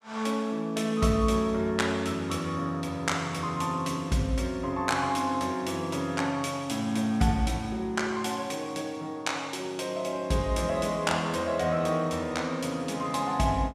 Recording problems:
none

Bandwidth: 14 kHz